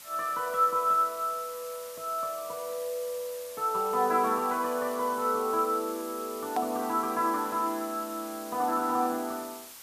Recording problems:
background hiss; slope +1 dB per octave, SNR 14 dB
hard cut with a click; at 6.5 s

